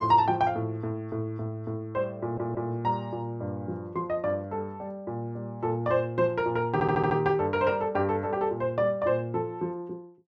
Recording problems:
audio stuttering; at 2 s and at 6.5 s

